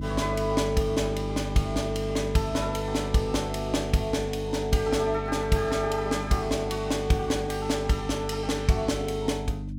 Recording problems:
mains hum; 50 Hz, harmonics up to 300 Hz, SNR 7 dB

